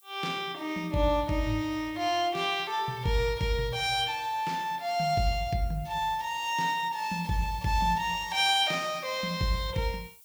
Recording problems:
hiss; slope +3 dB per octave, SNR 25 dB

